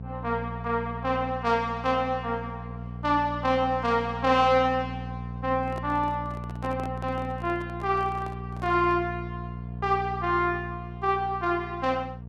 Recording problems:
electrical hum; 60 Hz, harmonics up to 720 Hz, SNR 10 dB
microphone handling noise; from 5.5 to 9 s; peak -10 dB vs average level

